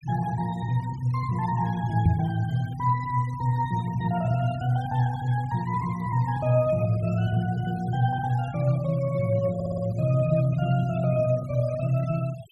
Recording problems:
denoising artefacts; signal-to-artefact ratio 22 dB
knock on the microphone; at 2 s; peak +6 dB vs average level
stutter; at 9.5 s

